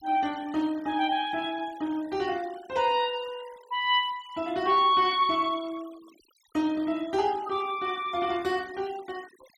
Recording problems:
denoising artefacts; signal-to-artefact ratio 23 dB

